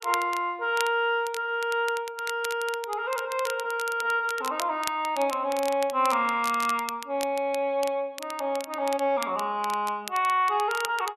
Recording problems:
crackle; vinyl, SNR 13 dB

